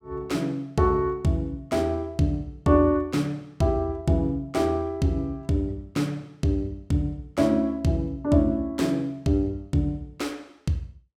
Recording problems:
none

